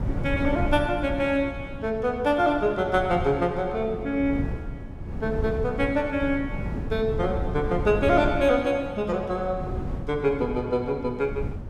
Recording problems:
wind on the microphone; below 190 Hz, SNR 8 dB

